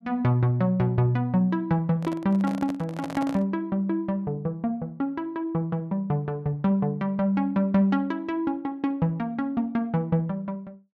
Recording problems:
handling noise; from 2 to 3.5 s; peak -5 dB vs average level

